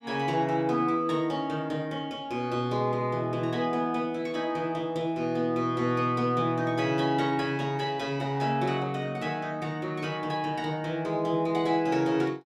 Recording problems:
none

